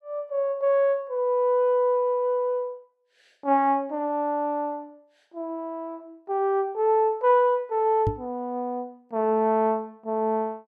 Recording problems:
microphone bump; at 8 s; peak +1 dB vs average level

